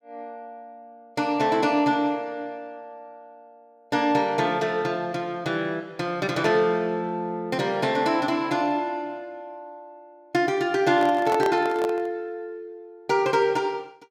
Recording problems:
handling noise; from 11 to 12 s; peak -2 dB vs average level

